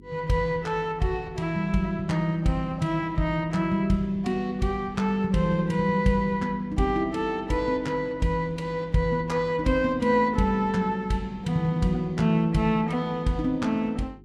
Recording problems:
hum; 50 Hz, harmonics up to 400 Hz, SNR 24 dB

